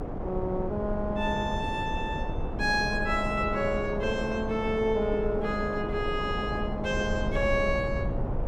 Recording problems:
low-frequency rumble; below 72 Hz, strongest tone 22 Hz, SNR 9 dB
wind on the microphone; below 620 Hz, SNR 6 dB

